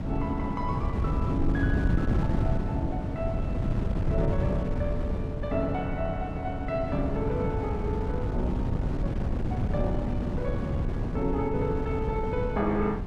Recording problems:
wind noise; below 190 Hz, SNR -2 dB

